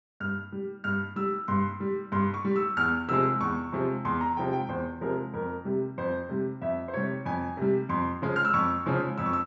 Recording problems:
treble cut off; nothing above 8 kHz

